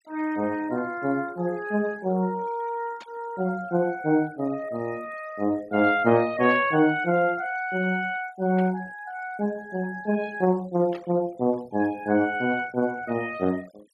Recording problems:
noise reduction artefacts; signal-to-artefact ratio 24 dB
static burst; 4 times, first at 3 s; peak -12 dB vs average level

